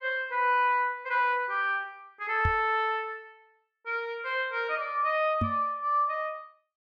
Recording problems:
microphone bump; at 2.5 s and at 5.5 s; peak +2 dB vs average level

